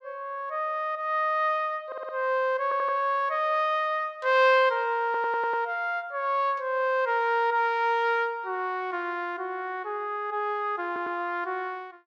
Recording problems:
stutter; 4 times, first at 2 s

